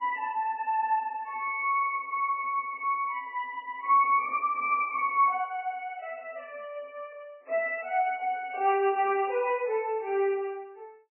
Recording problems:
lossy compression; MP3, log-spectral distance 3 dB, nothing above 2.4 kHz

